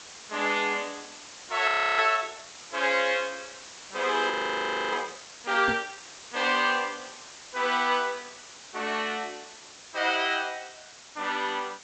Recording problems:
low-pass filter; nothing above 8 kHz
background hiss; slope 0 dB per octave, SNR 17 dB
audio freezing; at 1.5 s and at 4.5 s for 0.5 s
knock on the microphone; at 5.5 s; peak -5 dB vs average level

